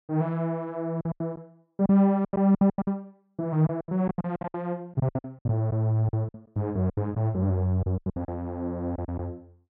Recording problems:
lost packets; 16% of the sound replaced, filled with silence

